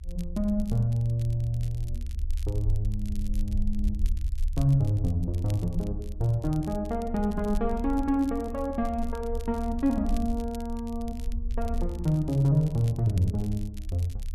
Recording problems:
low-frequency rumble; below 70 Hz, SNR 7 dB
crackle; vinyl, SNR 24 dB

